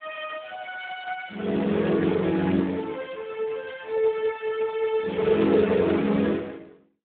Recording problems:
telephone audio; 150 Hz to 3.5 kHz, Speex

